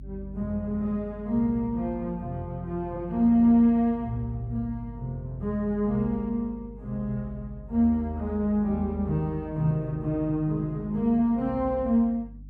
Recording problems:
electrical hum; 50 Hz, harmonics up to 300 Hz, SNR 18 dB

